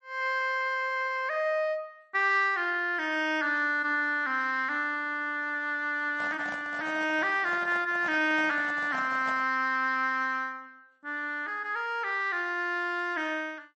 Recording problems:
lossy compression; MP3, then MP3, log-spectral distance 2 dB, nothing above 8 kHz
handling noise; from 6 to 9.5 s; peak -9 dB vs average level

